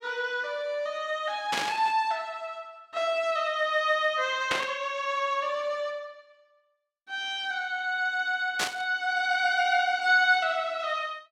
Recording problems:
burst of static; at 1.5 s, at 4.5 s and at 8.5 s; peak +3 dB vs average level

